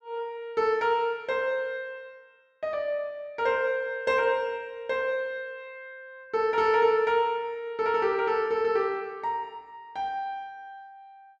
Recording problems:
none

